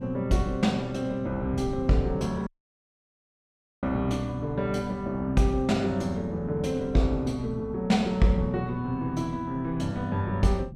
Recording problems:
wind on the microphone; below 200 Hz, SNR 14 dB
dropout; at 2.5 s for 1.5 s

